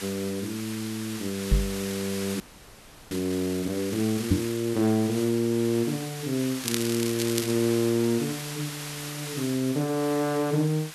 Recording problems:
background hiss; slope +1 dB per octave, SNR 9 dB
microphone thump; at 1.5 s and at 4.5 s; peak +8 dB vs average level
frozen audio; at 2.5 s for 0.5 s
crackle; at 6.5 s; loose cable, SNR 6 dB

